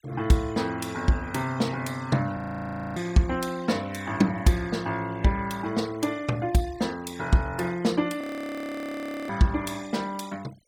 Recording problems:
noise reduction artefacts; signal-to-artefact ratio 21 dB
frozen audio; at 2.5 s for 0.5 s and at 8 s for 1 s

